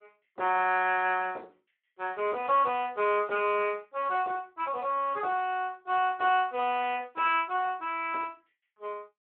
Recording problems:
phone line; 320 Hz to 3.1 kHz, Speex

